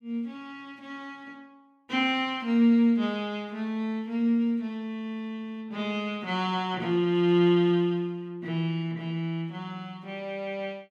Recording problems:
none

